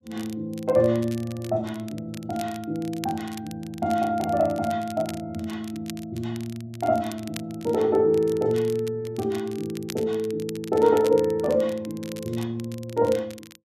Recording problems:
crackle; vinyl, SNR 19 dB

